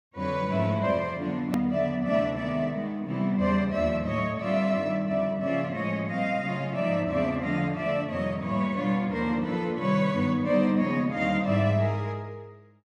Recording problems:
click at an edit; at 1.5 s

